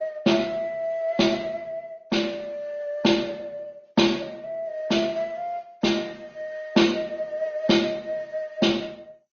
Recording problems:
lossy codec; MP2, then Opus, log-spectral distance 3 dB, nothing above 6.3 kHz

